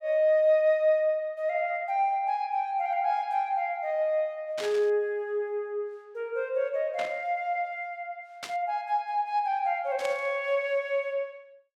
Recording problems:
static burst; 4 times, first at 4.5 s; peak -5 dB vs average level

